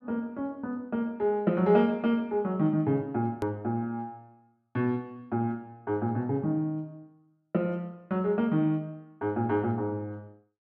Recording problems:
edit click; at 3.5 s

